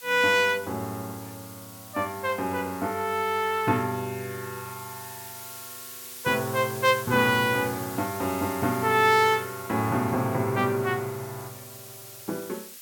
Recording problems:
background hiss; slope +4 dB per octave, SNR 15 dB

